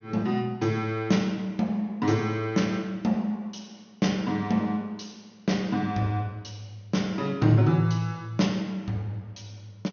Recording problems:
treble cut off; nothing above 6.6 kHz

